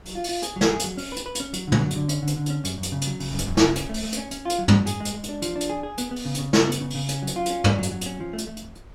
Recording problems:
wind on the microphone; below 120 Hz, SNR 21 dB

